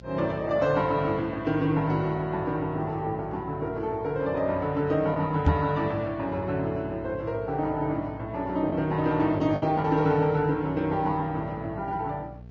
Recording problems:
lossy compression; Vorbis, log-spectral distance 2 dB
hum; 60 Hz, harmonics up to 720 Hz, SNR 19 dB
lost packets; 1.1% of the sound replaced, filled with the last packet
microphone thump; at 5.5 s; peak +8 dB vs average level

